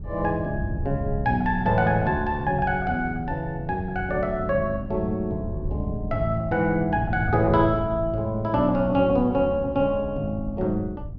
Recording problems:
wind noise; below 130 Hz, SNR 10 dB

